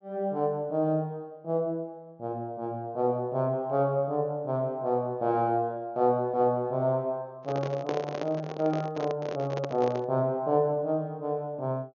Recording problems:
low-pass filter; nothing above 6.7 kHz
handling noise; from 7.5 to 10 s; peak 0 dB vs average level

